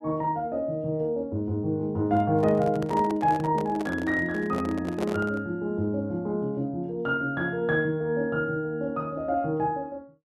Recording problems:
handling noise; from 2 to 5.5 s; peak -3 dB vs average level

